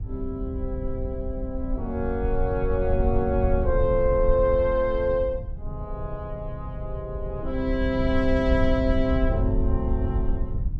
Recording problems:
low-frequency rumble; below 78 Hz, SNR 3 dB

